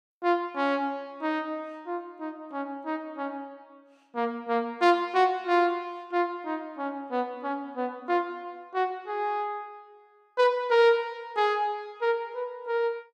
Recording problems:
none

